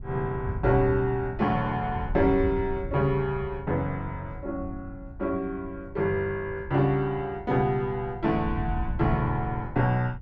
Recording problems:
wind noise; below 110 Hz, SNR 10 dB

